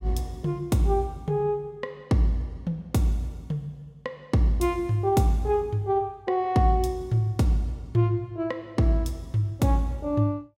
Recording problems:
none

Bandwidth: 16.5 kHz